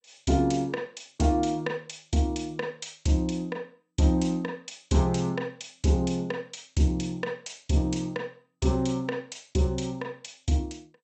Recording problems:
lossy codec; MP2, log-spectral distance 3 dB, nothing above 8 kHz

